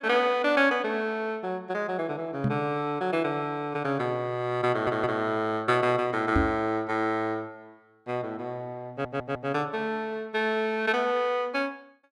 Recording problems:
microphone thump; at 2.5 s and at 6.5 s; peak +5 dB vs average level
audio stuttering; at 4.5 s and at 9 s

